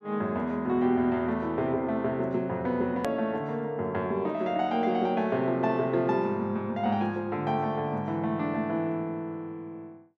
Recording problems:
edit click; at 3 s

